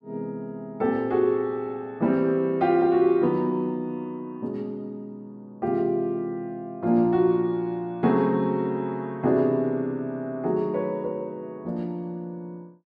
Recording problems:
none

